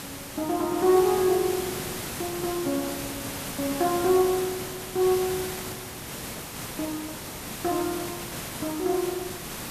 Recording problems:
hiss; slope -3 dB per octave, SNR 7 dB

